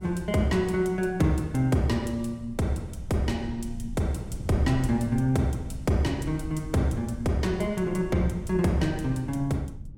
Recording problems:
rumble; below 120 Hz, SNR 15 dB
wind on the microphone; below 120 Hz, SNR 16 dB

